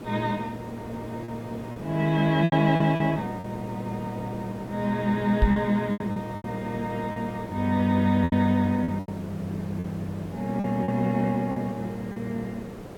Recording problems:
background hiss; slope -9 dB per octave, SNR 13 dB
lost packets; 8% of the sound replaced, filled with repeated pitch periods
microphone thump; at 5.5 s; peak +8 dB vs average level

